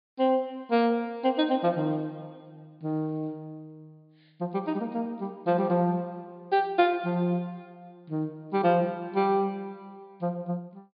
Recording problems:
treble missing; nothing above 5 kHz

